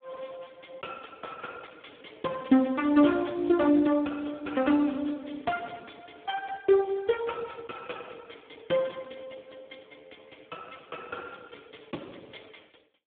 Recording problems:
telephone audio; 170 Hz to 2.6 kHz, Speex

